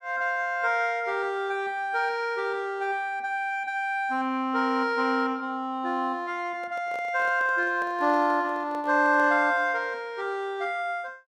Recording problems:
handling noise; from 6.5 to 9.5 s; peak -11 dB vs average level

